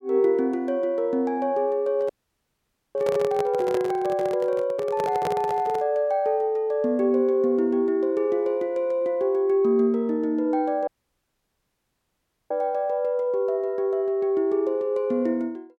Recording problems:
microphone handling noise; from 2 to 6 s; peak 0 dB vs average level
audio cutting out; at 2 s for 1 s and at 11 s for 1.5 s

